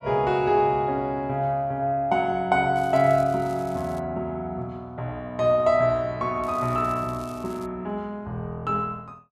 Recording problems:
crackle; from 3 to 4 s and from 6.5 to 7.5 s; loose cable, SNR 25 dB

